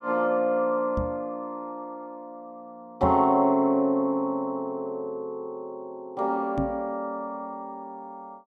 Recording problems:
knock on the microphone; at 1 s, at 3 s and at 6.5 s; peak +1 dB vs average level

